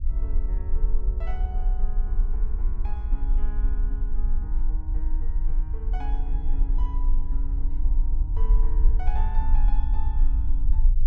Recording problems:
low-frequency rumble; below 40 Hz, strongest tone 24 Hz, SNR -16 dB

